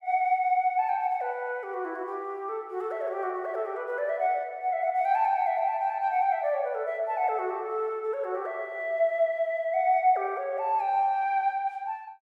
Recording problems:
none

